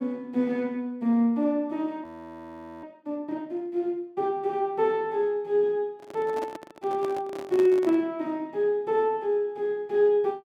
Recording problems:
audio freezing; at 2 s for 1 s
handling noise; from 6 to 8 s; peak -4 dB vs average level

